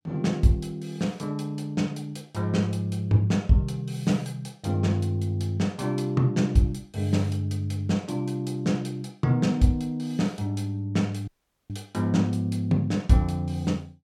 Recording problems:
audio cutting out; at 11 s

